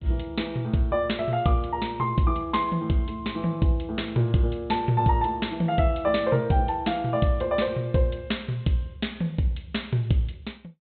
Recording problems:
treble missing; nothing above 4 kHz

